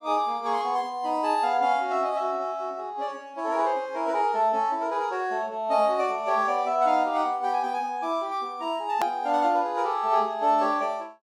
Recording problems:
click at an edit; at 9 s

